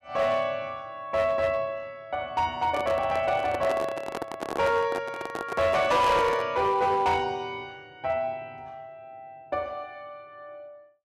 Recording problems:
distortion; hard clipping, signal-to-distortion ratio 12 dB
microphone handling noise; from 2.5 to 6.5 s; peak -1 dB vs average level

